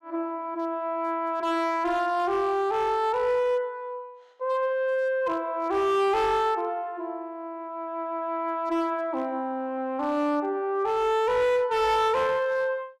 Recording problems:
distortion; hard clipping, signal-to-distortion ratio 11 dB

